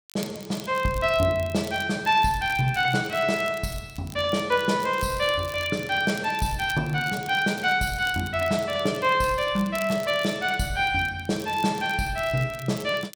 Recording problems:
crackle; vinyl, SNR 20 dB

